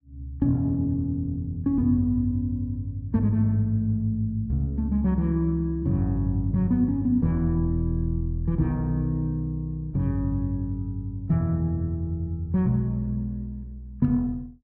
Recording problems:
none

